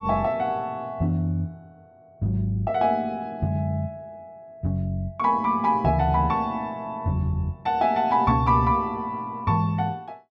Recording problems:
none

